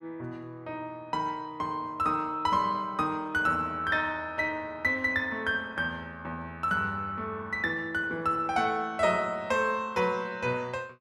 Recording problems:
none

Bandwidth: 13.5 kHz